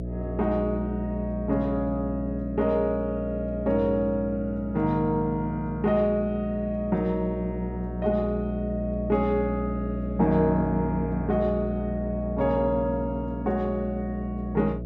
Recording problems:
hum; 60 Hz, harmonics up to 660 Hz, SNR 7 dB

